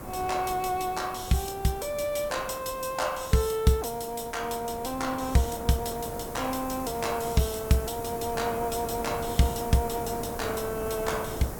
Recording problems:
background hiss; SNR 14 dB
wind noise; below 700 Hz, SNR 11 dB

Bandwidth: 18 kHz